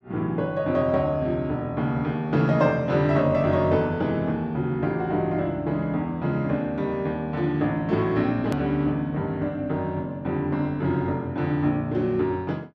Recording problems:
hard cut with a click; at 8.5 s

